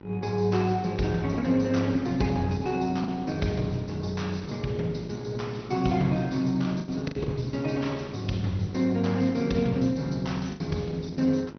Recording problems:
low-pass filter; nothing above 6 kHz
lossy codec; Opus, log-spectral distance 4 dB
hum; 50 Hz, harmonics up to 2 kHz, SNR 17 dB
packet loss; 3% of the sound replaced, filled with the last packet

